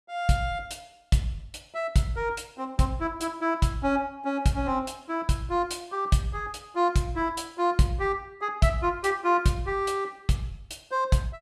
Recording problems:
none

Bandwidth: 14 kHz